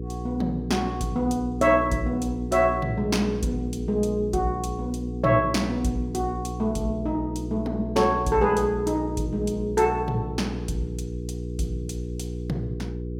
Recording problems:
hum; 60 Hz, harmonics up to 480 Hz, SNR 7 dB

